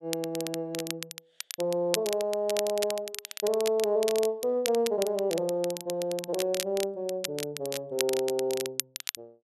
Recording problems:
crackling; vinyl, SNR 7 dB

